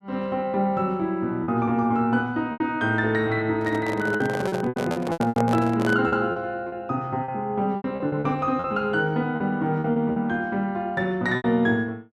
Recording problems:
packet loss; 9% of the sound replaced, filled with repeated pitch periods
handling noise; from 3.5 to 6 s; peak -1 dB vs average level

